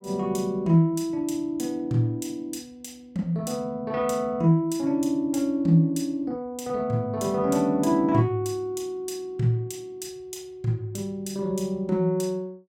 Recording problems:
none

